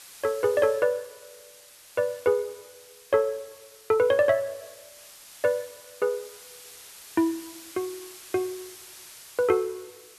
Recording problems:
background hiss; slope +2 dB per octave, SNR 19 dB

